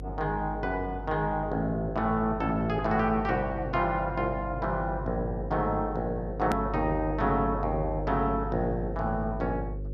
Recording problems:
electrical hum; 50 Hz, harmonics up to 550 Hz, SNR 9 dB
click at an edit; at 6.5 s

